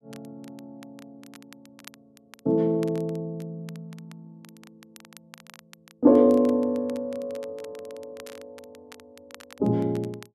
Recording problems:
crackling; vinyl, SNR 27 dB

